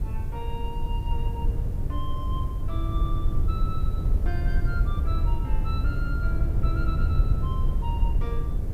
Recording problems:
background hiss; slope -2 dB per octave, SNR 20 dB
wind on the microphone; below 82 Hz, SNR -11 dB

